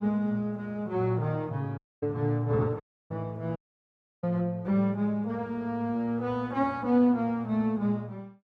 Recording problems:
dropout; at 2 s, at 3 s and at 3.5 s for 0.5 s

